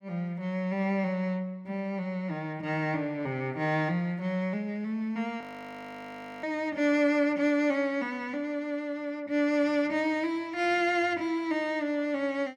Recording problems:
frozen audio; at 5.5 s for 1 s

